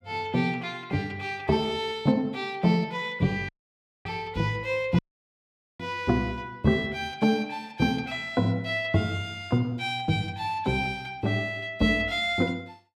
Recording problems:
audio cutting out; at 3.5 s for 0.5 s and at 5 s for 1 s

